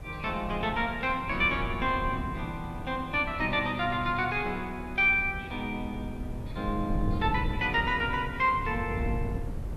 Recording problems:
background hiss; slope -7 dB per octave, SNR 23 dB
wind noise; below 140 Hz, SNR 9 dB

